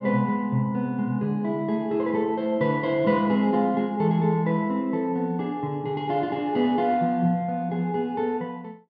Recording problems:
none

